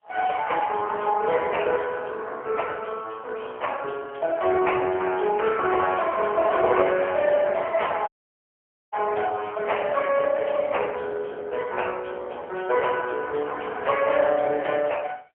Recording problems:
telephone audio; 320 Hz to 3.2 kHz, AMR-NB, then MP3
audio cutting out; at 8 s for 1 s

